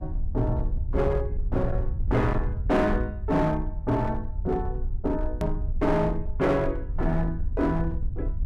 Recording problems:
distorted audio; hard clipping, uneven, signal-to-distortion ratio 10 dB
low-frequency rumble; below 70 Hz, SNR 4 dB
edit click; at 5.5 s

